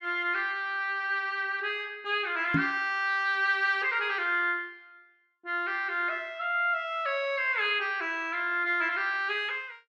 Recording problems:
microphone bump; at 2.5 s; peak +4 dB vs average level

